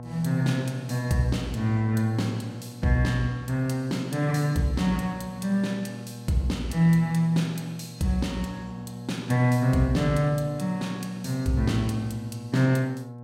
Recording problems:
hum; 60 Hz, harmonics up to 1.1 kHz, SNR 15 dB

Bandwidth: 16 kHz